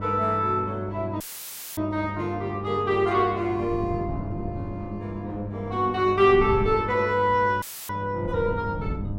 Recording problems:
hum; 50 Hz, harmonics up to 1 kHz, SNR 11 dB
wind noise; below 180 Hz, SNR 13 dB
dropout; at 1 s for 0.5 s and at 7.5 s; filled with static

